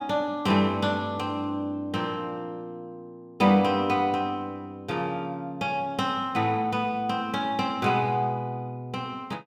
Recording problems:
none

